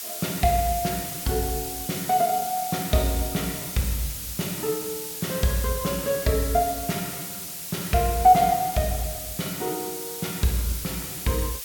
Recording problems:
background hiss; slope +4 dB per octave, SNR 6 dB

